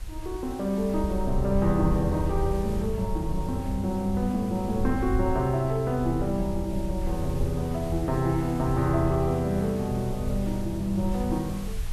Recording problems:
hiss; slope -2 dB per octave, SNR 20 dB
low-frequency rumble; below 72 Hz, SNR 8 dB

